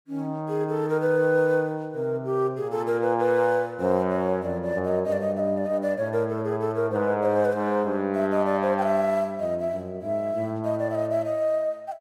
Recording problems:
none

